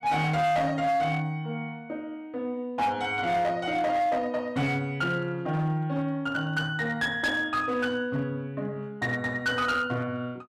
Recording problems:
distorted audio; hard clipping, signal-to-distortion ratio 11 dB

